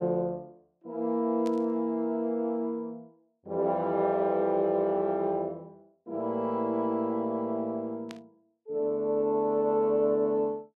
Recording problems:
burst of static; at 1.5 s and at 8 s; peak -12 dB vs average level

